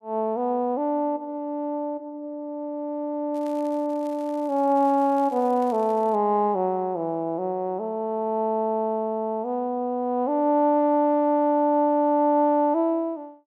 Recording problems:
crackling; from 3.5 to 6 s; loose cable, SNR 29 dB

